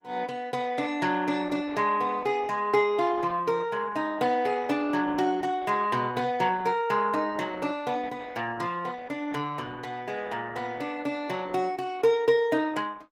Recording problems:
lossy compression; Opus, log-spectral distance 3 dB, nothing above 19 kHz

